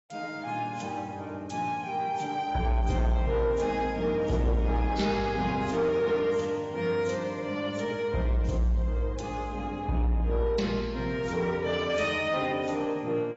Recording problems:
codec artefacts; AAC, then AAC, log-spectral distance 3 dB, nothing above 7.6 kHz
distorted audio; soft clipping, signal-to-distortion ratio 11 dB

